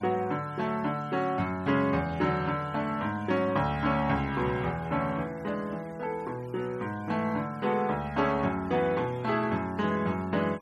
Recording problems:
noise reduction artefacts; signal-to-artefact ratio 25 dB

